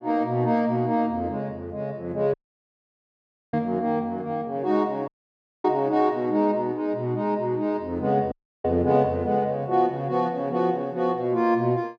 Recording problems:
audio cutting out; at 2.5 s for 1 s, at 5 s for 0.5 s and at 8.5 s

